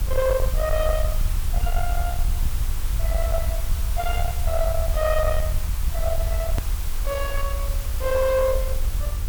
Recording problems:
distortion; soft clipping, signal-to-distortion ratio 11 dB
electrical hum; 50 Hz, harmonics up to 600 Hz, SNR 19 dB
hiss; SNR 10 dB
rumble; below 66 Hz, SNR 1 dB
edit click; at 6.5 s

